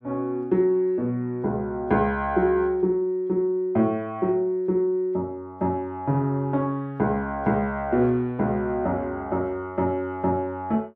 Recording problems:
none

